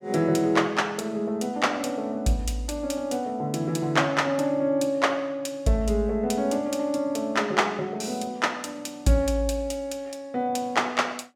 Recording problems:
none

